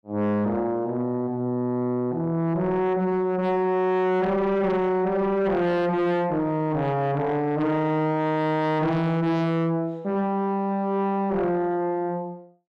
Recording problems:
distorted audio; soft clipping, signal-to-distortion ratio 7 dB

